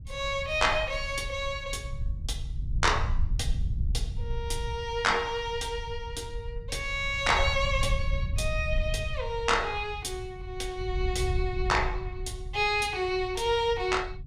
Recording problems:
wind on the microphone; below 82 Hz, SNR 6 dB

